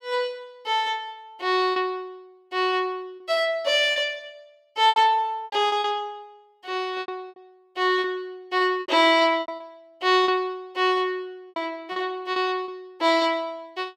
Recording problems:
packet loss; 8% of the sound replaced, filled with repeated pitch periods

